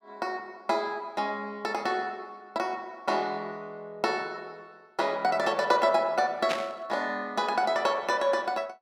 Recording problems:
static burst; at 6.5 s; peak +2 dB vs average level

